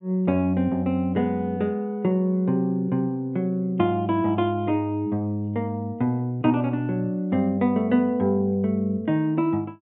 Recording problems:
treble missing; nothing above 4 kHz

